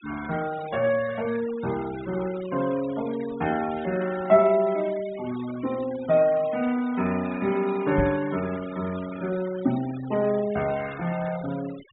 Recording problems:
treble cut off; nothing above 3.8 kHz
noise reduction artefacts; signal-to-artefact ratio 17 dB
microphone bump; at 8 s; peak +3 dB vs average level

